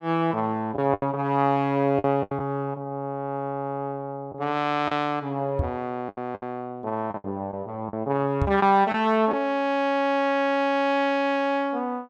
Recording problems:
packet loss; 5% of the sound replaced, filled with the last packet
knock on the microphone; at 5.5 s and at 8.5 s; peak +3 dB vs average level

